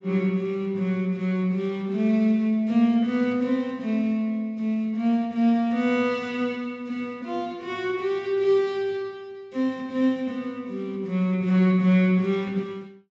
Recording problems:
treble cut off; nothing above 8 kHz

